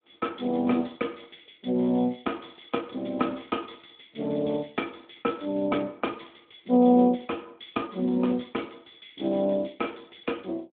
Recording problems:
phone line; 150 Hz to 3.5 kHz, Speex

